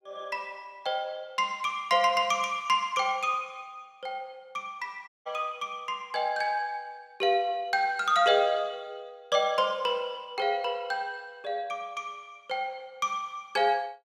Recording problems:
dropout; at 5 s

